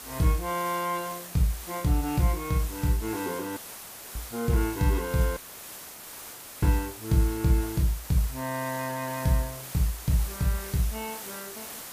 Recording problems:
background hiss; slope -2 dB per octave, SNR 11 dB
audio cutting out; at 3.5 s for 0.5 s and at 5.5 s for 1.5 s

